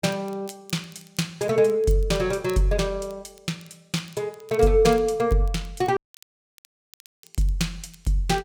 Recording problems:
crackle; vinyl, SNR 26 dB
audio cutting out; at 6 s for 1.5 s

